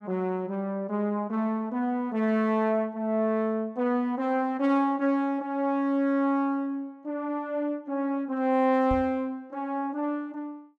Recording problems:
microphone thump; at 9 s; peak -3 dB vs average level

